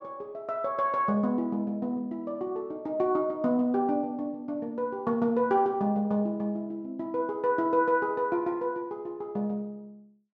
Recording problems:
none

